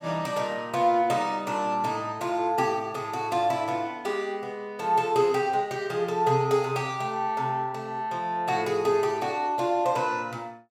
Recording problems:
none

